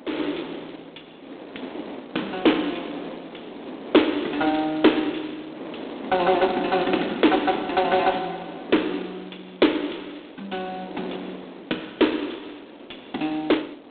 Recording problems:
phone line; 220 Hz to 3.7 kHz, G.726
wind noise; below 720 Hz, SNR 14 dB

